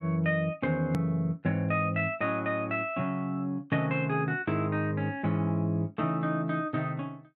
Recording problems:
hard cut with a click; at 1 s

